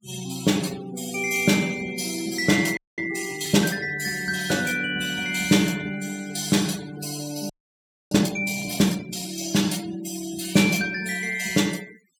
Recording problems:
denoising artefacts; signal-to-artefact ratio 17 dB
audio freezing; at 3 s and at 7.5 s for 0.5 s

